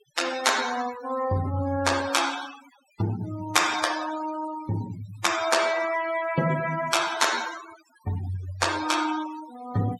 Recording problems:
noise reduction artefacts; signal-to-artefact ratio 11 dB

